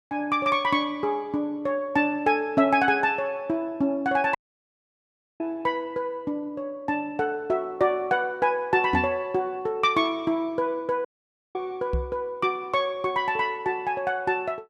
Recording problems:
audio cutting out; at 4.5 s for 1 s and at 11 s for 0.5 s
microphone bump; at 9 s and at 12 s; peak +2 dB vs average level

